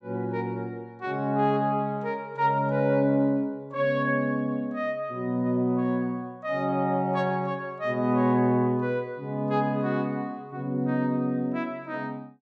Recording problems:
none

